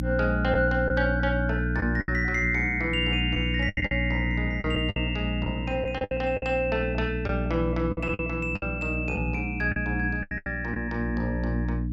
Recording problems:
hum; 60 Hz, harmonics up to 300 Hz, SNR 3 dB
lost packets; 8% of the sound replaced, filled with the last packet

